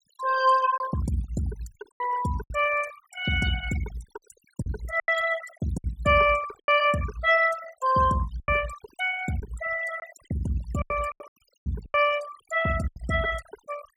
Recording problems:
noise reduction artefacts; signal-to-artefact ratio 14 dB
packet loss; 8% of the sound replaced, filled with silence

